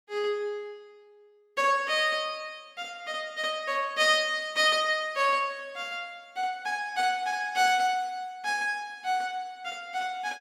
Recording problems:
none

